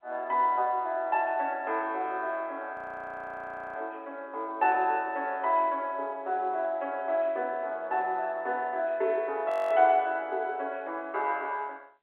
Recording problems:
phone line; 340 Hz to 3.3 kHz, G.711
audio freezing; at 2.5 s for 1 s and at 9.5 s

